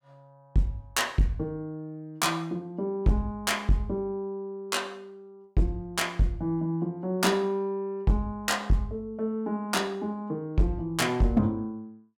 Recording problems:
distorted audio; hard clipping, signal-to-distortion ratio 12 dB

